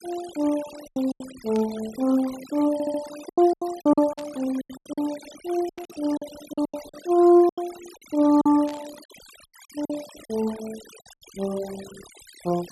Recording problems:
noise reduction artefacts; signal-to-artefact ratio 19 dB
packet loss; 11% of the sound replaced, filled with silence
burst of static; 4 times, first at 1.5 s; peak -13 dB vs average level
stutter; at 2.5 s

